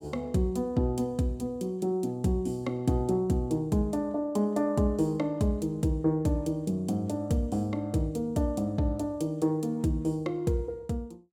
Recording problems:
none

